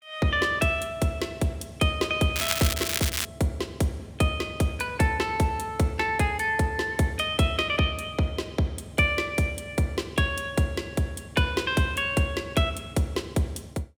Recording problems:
crackle; at 2.5 s; loose cable, SNR 2 dB

